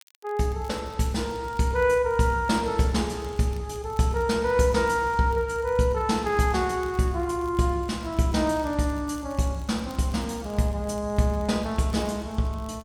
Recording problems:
crackle; vinyl, SNR 28 dB

